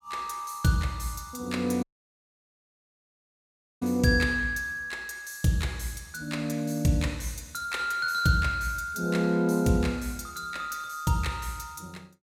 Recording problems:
audio cutting out; at 2 s for 2 s

